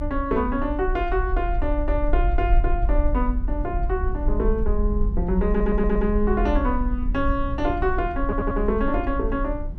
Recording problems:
rumble; below 50 Hz, SNR 2 dB
wind noise; below 210 Hz, SNR 14 dB
stutter; at 5.5 s and at 8 s

